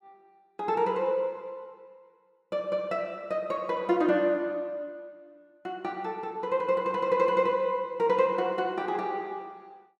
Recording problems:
none

